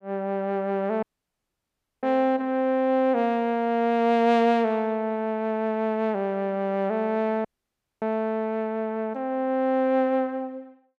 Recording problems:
audio cutting out; at 1 s for 1 s and at 7.5 s for 0.5 s

